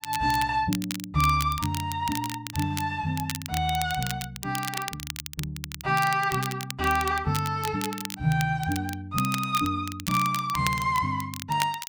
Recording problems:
crackle; vinyl, SNR 9 dB

